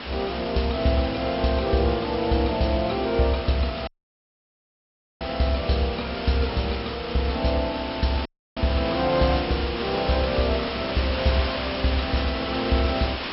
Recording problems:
low-pass filter; nothing above 5.4 kHz
hiss; SNR 7 dB
dropout; at 4 s for 1.5 s and at 8.5 s

